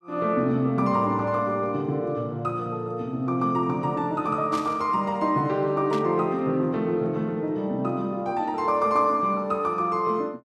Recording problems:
static burst; at 4.5 s and at 6 s; peak -9 dB vs average level

